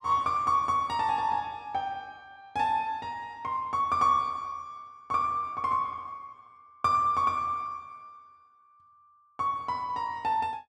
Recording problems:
none

